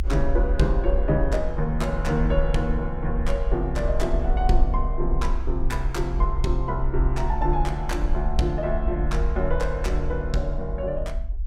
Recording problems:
rumble; below 48 Hz, SNR 1 dB

